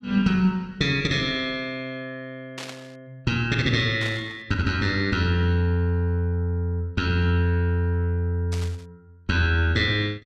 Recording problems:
static burst; at 2.5 s, at 4 s and at 8.5 s; peak -8 dB vs average level

